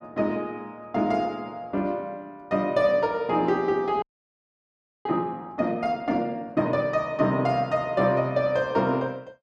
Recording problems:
audio freezing; at 4 s for 1 s

